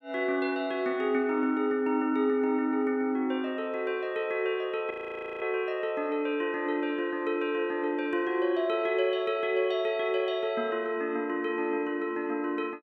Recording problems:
frozen audio; at 5 s for 0.5 s

